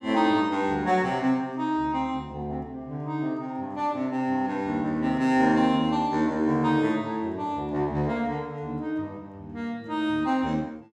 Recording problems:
none

